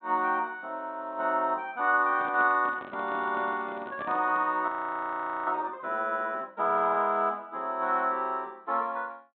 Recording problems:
treble cut off; nothing above 4 kHz
microphone handling noise; from 2 to 4.5 s; peak -9 dB vs average level
frozen audio; at 4.5 s for 1 s

